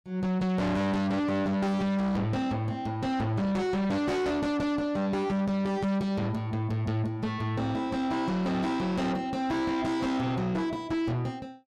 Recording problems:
distorted audio; soft clipping, signal-to-distortion ratio 6 dB

